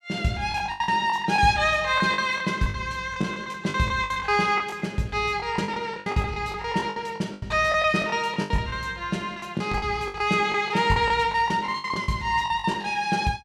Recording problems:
packet loss; 16% of the sound replaced, filled with the last packet

